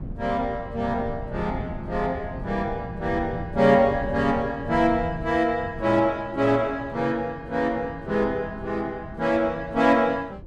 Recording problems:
wind on the microphone; below 190 Hz, SNR 14 dB

